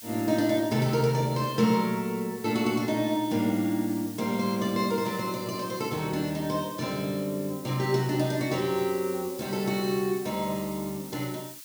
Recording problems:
hiss; slope +6 dB per octave, SNR 15 dB

